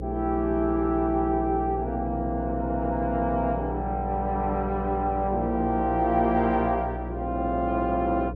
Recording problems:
hum; 60 Hz, harmonics up to 540 Hz, SNR 8 dB

